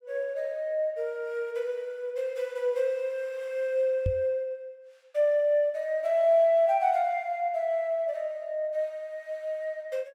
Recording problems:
knock on the microphone; at 4 s; peak +2 dB vs average level

